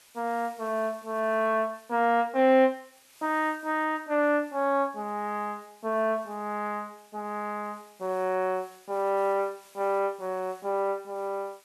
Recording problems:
background hiss; slope +1 dB per octave, SNR 27 dB

